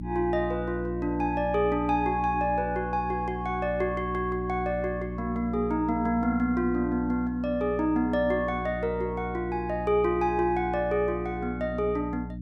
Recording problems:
electrical hum; 60 Hz, harmonics up to 300 Hz, SNR 8 dB

